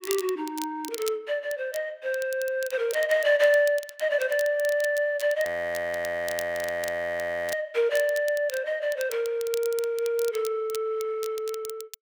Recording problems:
crackle; vinyl, SNR 15 dB
frozen audio; at 5.5 s for 2 s

